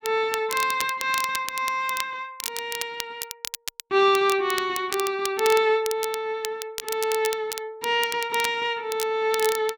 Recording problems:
crackling; vinyl, SNR 9 dB

